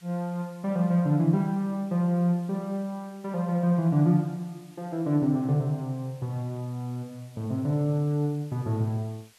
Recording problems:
background hiss; slope +1 dB per octave, SNR 29 dB

